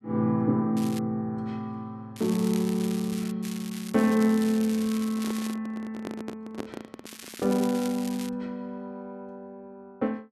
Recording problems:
crackle; 4 times, first at 1 s; loose cable, SNR 14 dB
microphone handling noise; from 5 to 7.5 s; peak -3 dB vs average level

